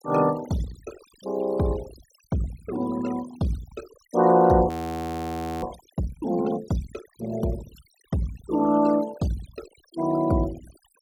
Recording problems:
noise reduction artefacts; signal-to-artefact ratio 18 dB
frozen audio; at 4.5 s for 1 s

